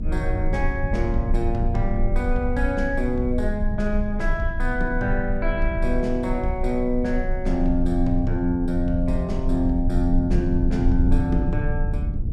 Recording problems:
low-frequency rumble; below 64 Hz, strongest tone 24 Hz, SNR 2 dB

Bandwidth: 14 kHz